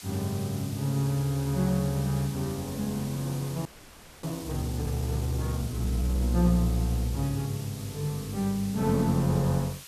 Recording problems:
hiss; slope +2 dB per octave, SNR 15 dB
audio freezing; at 3.5 s for 0.5 s

